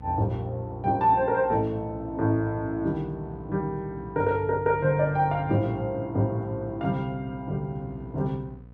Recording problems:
hum; 60 Hz, harmonics up to 780 Hz, SNR 18 dB

